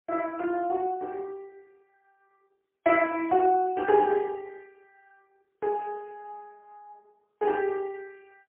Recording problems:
phone line; 150 Hz to 3 kHz, AMR-NB, then MP3

